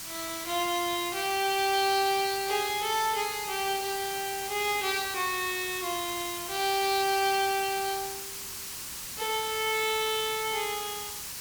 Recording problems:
hiss; SNR 7 dB

